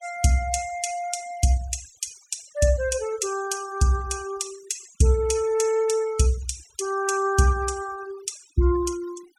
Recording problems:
noise reduction artefacts; signal-to-artefact ratio 19 dB

